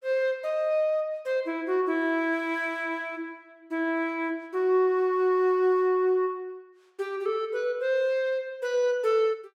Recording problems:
none

